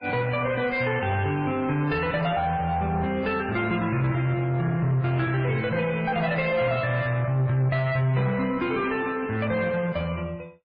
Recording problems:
lossy codec; MP3, then MP3, log-spectral distance 2 dB, nothing above 4.2 kHz
distortion; soft clipping, signal-to-distortion ratio 11 dB

